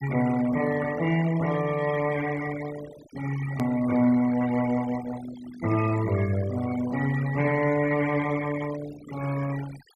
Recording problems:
noise reduction artefacts; signal-to-artefact ratio 15 dB
hard cut with a click; at 3.5 s

